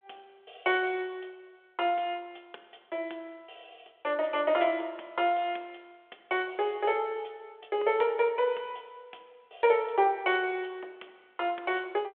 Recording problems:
phone line; 320 Hz to 3.5 kHz, G.726

